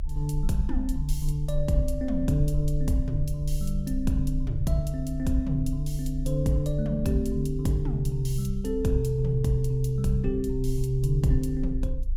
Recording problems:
rumble; below 58 Hz, strongest tone 30 Hz, SNR 6 dB

